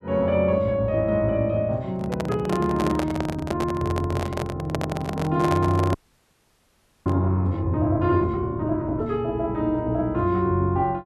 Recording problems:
microphone handling noise; from 2 to 7 s; peak +1 dB vs average level
frozen audio; at 6 s for 1 s

